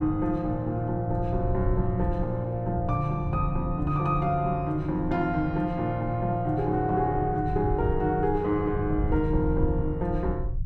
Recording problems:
rumble; below 88 Hz, SNR 8 dB

